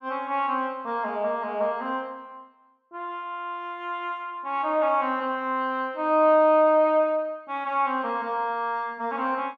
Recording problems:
none

